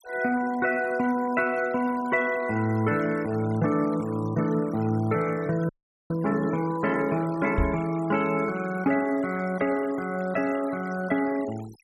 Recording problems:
noise reduction artefacts; signal-to-artefact ratio 20 dB
frozen audio; at 5.5 s
microphone thump; at 7.5 s; peak +3 dB vs average level

